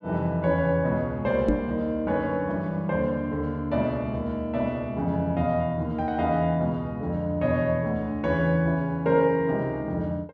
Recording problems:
microphone thump; at 1.5 s; peak +6 dB vs average level

